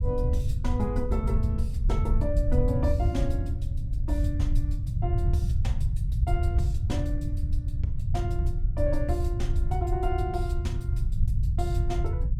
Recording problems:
rumble; below 98 Hz, SNR -5 dB

